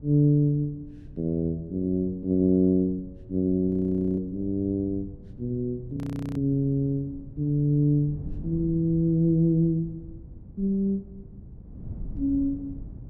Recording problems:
wind on the microphone; below 160 Hz, SNR 17 dB
frozen audio; at 3.5 s and at 6 s

